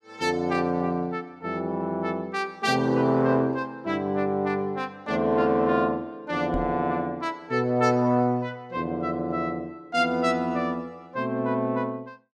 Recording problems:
knock on the microphone; at 6.5 s; peak -3 dB vs average level

